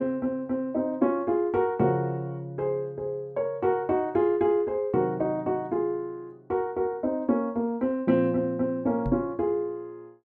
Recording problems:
microphone bump; at 9 s; peak -1 dB vs average level

